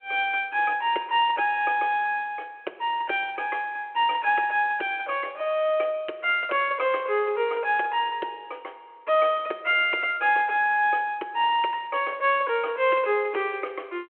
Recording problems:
phone line; 280 Hz to 3.2 kHz, G.726

